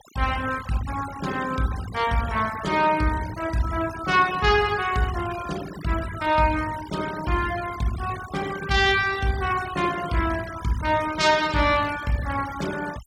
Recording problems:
denoising artefacts; signal-to-artefact ratio 15 dB

